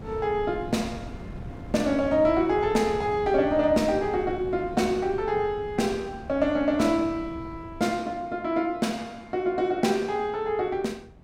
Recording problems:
wind on the microphone; below 270 Hz, SNR 15 dB

